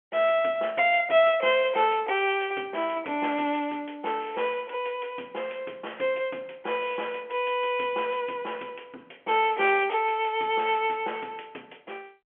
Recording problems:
telephone audio; 260 Hz to 3.2 kHz, G.711

